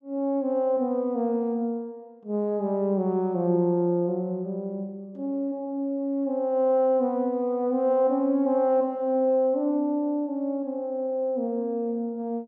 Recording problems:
none

